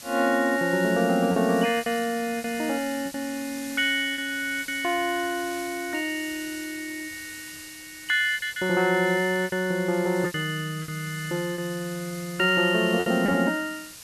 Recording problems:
hiss; slope +2 dB per octave, SNR 15 dB
packet loss; 6% of the sound replaced, filled with repeated pitch periods

